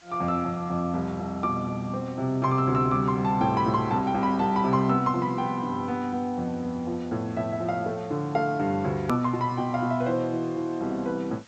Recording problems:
treble cut off; nothing above 8 kHz
hiss; slope 0 dB per octave, SNR 27 dB
hard cut with a click; at 9 s

